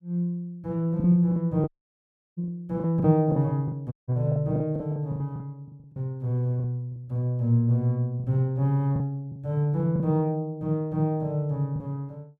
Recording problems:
lost packets; 9% of the sound replaced, filled with the last packet
audio cutting out; at 1.5 s for 0.5 s and at 4 s

